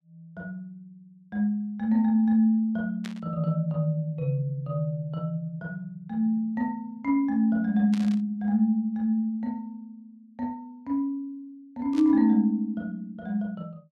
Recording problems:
static burst; at 3 s, at 8 s and at 12 s; peak -10 dB vs average level

